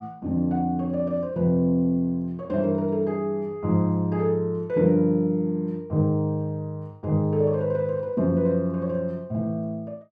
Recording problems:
none

